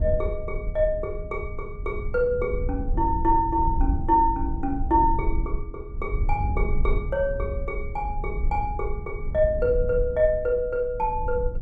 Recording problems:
rumble; below 68 Hz, SNR 5 dB

